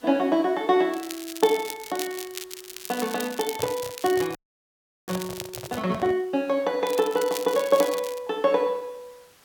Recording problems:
background hiss; slope -2 dB per octave, SNR 29 dB
crackle; from 1 to 6 s and from 7 to 8 s; loose cable, SNR 12 dB
microphone handling noise; from 3.5 to 6 s; peak -6 dB vs average level
audio freezing; at 4.5 s for 0.5 s

